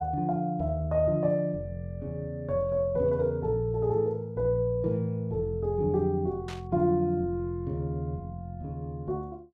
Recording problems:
burst of static; at 6.5 s; peak -10 dB vs average level

